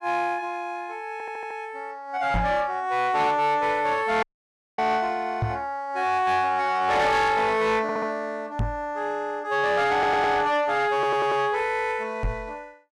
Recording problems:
distorted audio; soft clipping, signal-to-distortion ratio 11 dB
stutter; 4 times, first at 1 s
microphone thump; 4 times, first at 2.5 s; peak +2 dB vs average level
dropout; at 4 s for 0.5 s

